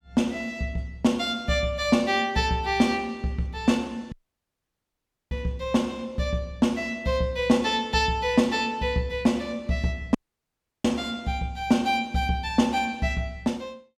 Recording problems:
dropout; at 4 s for 1 s and at 10 s for 0.5 s

